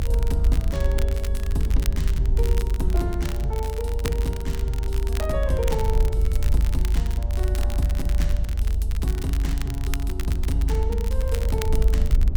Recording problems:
low-frequency rumble; below 74 Hz, SNR -5 dB
crackle; vinyl, SNR 9 dB

